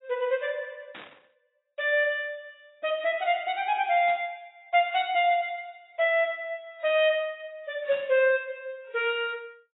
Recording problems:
lossy compression; AAC, log-spectral distance 2 dB, nothing above 3.1 kHz
static burst; at 1 s, at 4 s and at 8 s; peak -13 dB vs average level

